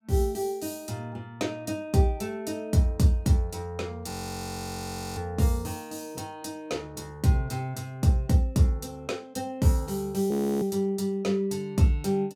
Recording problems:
frozen audio; at 4 s for 1 s and at 10 s

